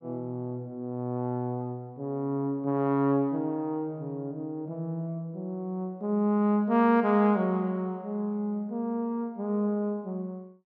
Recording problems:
none

